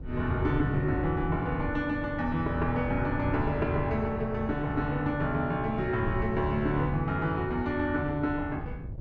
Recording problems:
wind noise; below 140 Hz, SNR 9 dB

